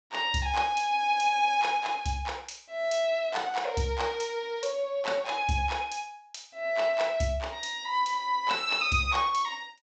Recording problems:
treble missing; nothing above 8 kHz

